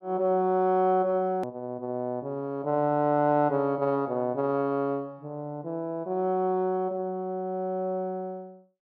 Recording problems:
hard cut with a click; at 1.5 s

